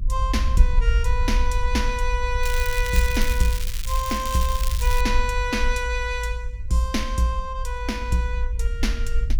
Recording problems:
rumble; below 56 Hz, SNR 1 dB
crackle; from 2.5 to 5 s; loose cable, SNR 8 dB

